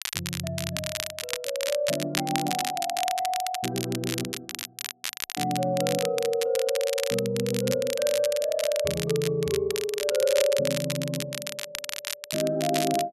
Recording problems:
crackling; vinyl, SNR 5 dB

